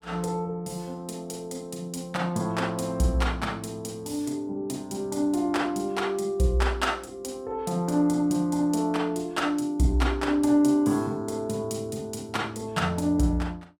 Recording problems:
none

